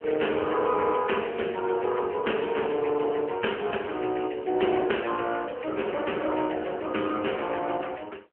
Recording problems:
phone line; 260 Hz to 3.1 kHz, AMR-NB

